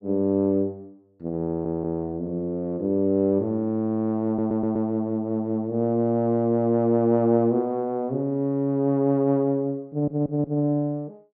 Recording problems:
stutter; at 1.5 s, at 4.5 s and at 10 s

